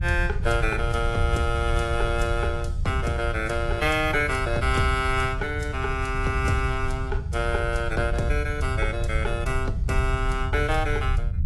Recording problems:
codec artefacts; AAC, log-spectral distance 2 dB, nothing above 11.6 kHz
rumble; below 96 Hz, SNR 3 dB

